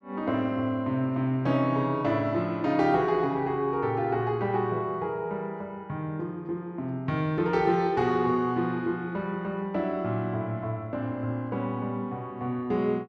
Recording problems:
none

